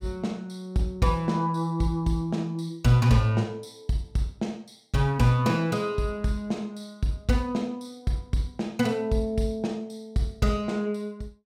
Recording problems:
none

